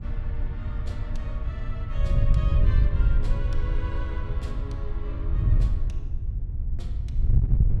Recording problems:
wind on the microphone; below 86 Hz, SNR -14 dB

